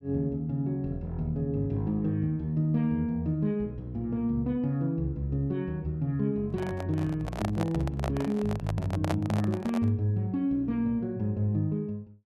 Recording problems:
handling noise; from 6.5 to 10 s; peak +2 dB vs average level

